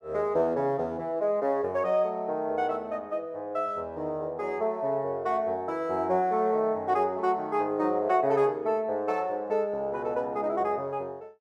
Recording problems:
none

